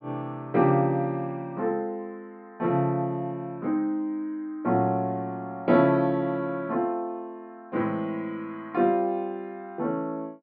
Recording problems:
low-pass filter; nothing above 5.2 kHz

